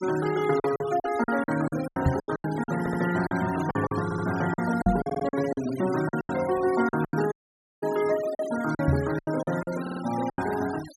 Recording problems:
noise reduction artefacts; signal-to-artefact ratio 14 dB
packet loss; 14% of the sound replaced, filled with silence
microphone bump; at 2 s, at 5 s and at 9 s; peak +7 dB vs average level
audio stuttering; 4 times, first at 3 s
dropout; at 7.5 s for 0.5 s

